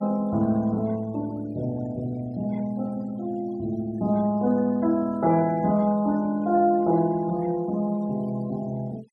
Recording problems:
noise reduction artefacts; signal-to-artefact ratio 26 dB

